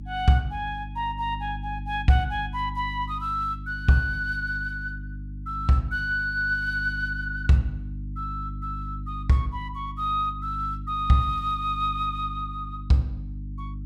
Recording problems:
electrical hum; 50 Hz, harmonics up to 300 Hz, SNR 10 dB

